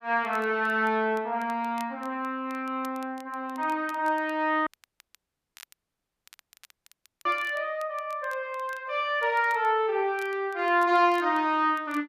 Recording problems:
crackling; vinyl, SNR 27 dB
audio cutting out; at 4.5 s for 2.5 s

